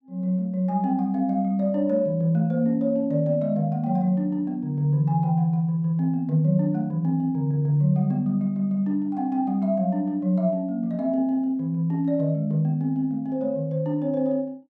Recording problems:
none

